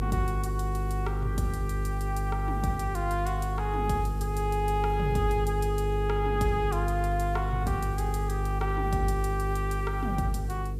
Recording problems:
hum; 50 Hz, harmonics up to 500 Hz, SNR 0 dB
background hiss; slope +1 dB per octave, SNR 27 dB

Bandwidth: 15 kHz